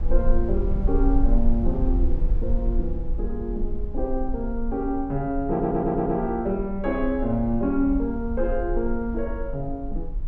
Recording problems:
low-frequency rumble; below 44 Hz, strongest tone 24 Hz, SNR 3 dB
stutter; at 5.5 s

